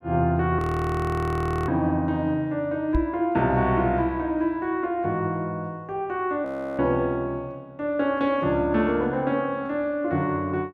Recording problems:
audio freezing; at 0.5 s for 1 s and at 6.5 s
knock on the microphone; at 3 s; peak +3 dB vs average level

